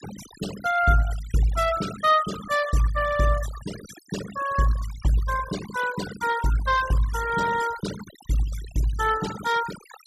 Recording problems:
denoising artefacts; signal-to-artefact ratio 13 dB

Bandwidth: 14.5 kHz